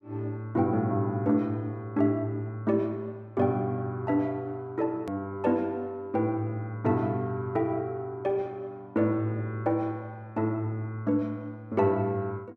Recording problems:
edit click; at 5 s

